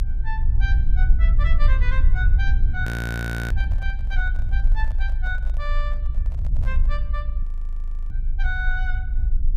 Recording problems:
low-frequency rumble; below 54 Hz, strongest tone 26 Hz, SNR -9 dB
audio freezing; at 3 s for 0.5 s and at 7.5 s for 0.5 s
microphone handling noise; from 3.5 to 7 s; peak -9 dB vs average level

